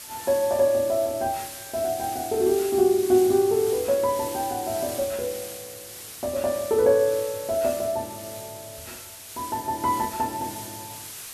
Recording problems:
hiss; slope +1 dB per octave, SNR 12 dB

